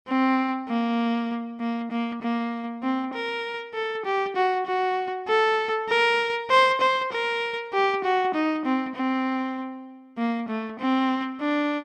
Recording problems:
none

